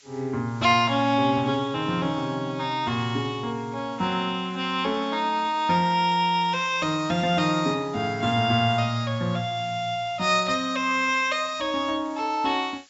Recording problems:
treble missing; nothing above 8 kHz
hiss; SNR 27 dB

